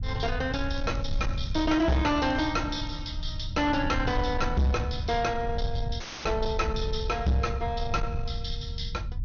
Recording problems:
treble cut off; nothing above 6.5 kHz
distorted audio; soft clipping, signal-to-distortion ratio 11 dB
low-frequency rumble; below 96 Hz, SNR 6 dB
crackle; from 0.5 to 3 s; loose cable, SNR 27 dB
dropout; at 6 s; filled with static

